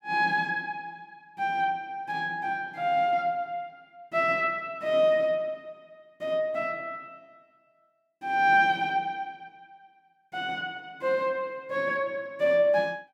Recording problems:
none

